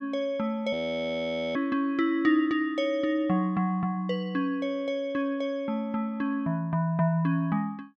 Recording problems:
frozen audio; at 0.5 s for 1 s

